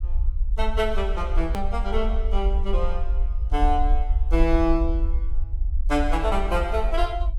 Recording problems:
low-frequency rumble; below 54 Hz, SNR 0 dB
click at an edit; at 1.5 s

